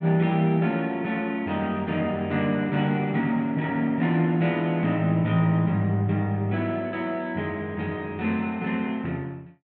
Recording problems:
none

